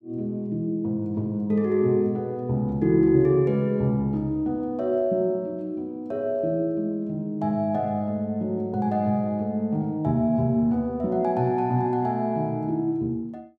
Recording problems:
none

